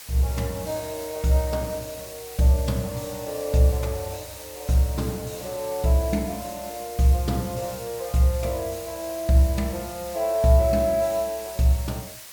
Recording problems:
background hiss; slope +2 dB per octave, SNR 14 dB

